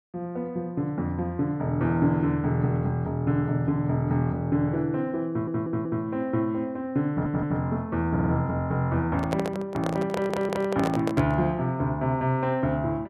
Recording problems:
audio stuttering; 4 times, first at 5.5 s
microphone handling noise; from 9 to 11 s; peak +1 dB vs average level

